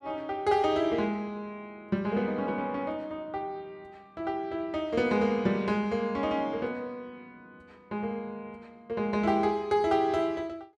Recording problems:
none

